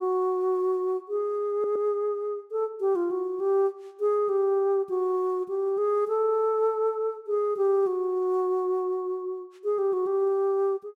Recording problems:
stutter; at 1.5 s

